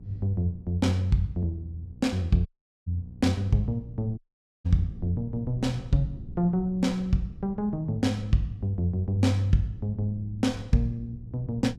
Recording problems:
hum; 60 Hz, harmonics up to 480 Hz, SNR 20 dB
rumble; below 140 Hz, SNR 19 dB
audio cutting out; at 2.5 s and at 4 s

